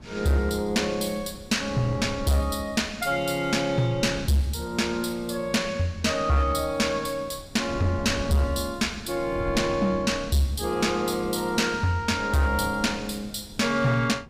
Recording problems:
distortion; hard clipping, uneven, signal-to-distortion ratio 11 dB
wind on the microphone; below 220 Hz, SNR 16 dB

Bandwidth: 15.5 kHz